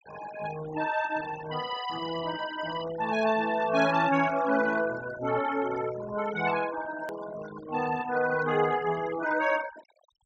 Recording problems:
treble missing; nothing above 8 kHz
denoising artefacts; signal-to-artefact ratio 15 dB
edit click; at 7 s

